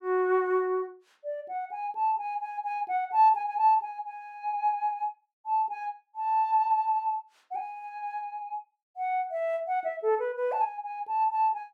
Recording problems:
none

